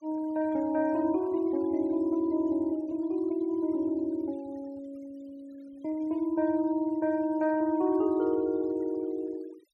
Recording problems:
denoising artefacts; signal-to-artefact ratio 27 dB

